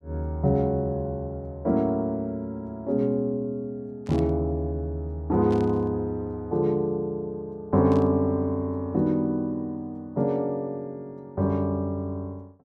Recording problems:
static burst; at 4 s, at 5.5 s and at 8 s; peak -14 dB vs average level

